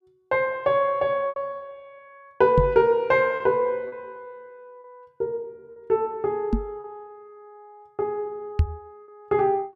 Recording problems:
lost packets; 4% of the sound replaced, filled with repeated pitch periods
microphone bump; at 2.5 s, at 6.5 s and at 8.5 s; peak +7 dB vs average level

